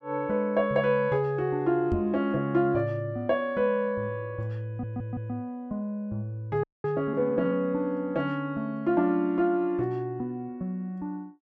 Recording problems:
knock on the microphone; at 2 s; peak +1 dB vs average level
stutter; at 4.5 s
frozen audio; at 6.5 s

